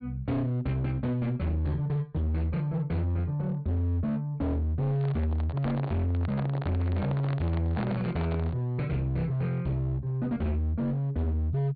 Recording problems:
treble missing; nothing above 4.6 kHz
distorted audio; hard clipping, signal-to-distortion ratio 8 dB
handling noise; from 5 to 8.5 s; peak -3 dB vs average level

